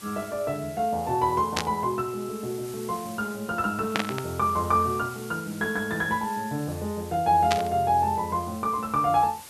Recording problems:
hiss; slope 0 dB per octave, SNR 18 dB
burst of static; at 1.5 s, at 4 s and at 7.5 s; peak +5 dB vs average level

